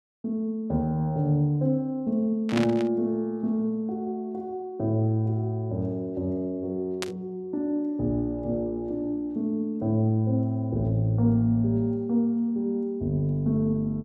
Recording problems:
burst of static; at 2.5 s and at 7 s; peak 0 dB vs average level

